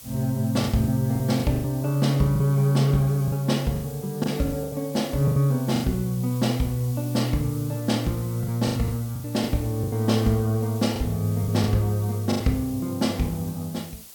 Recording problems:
background hiss; SNR 17 dB
packet loss; 9% of the sound replaced, filled with the last packet

